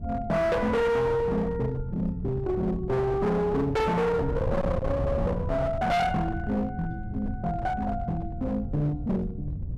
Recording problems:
distortion; hard clipping, uneven, signal-to-distortion ratio 7 dB
wind noise; below 160 Hz, SNR 8 dB

